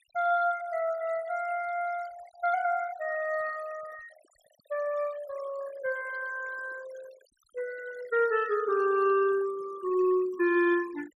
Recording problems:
denoising artefacts; signal-to-artefact ratio 20 dB

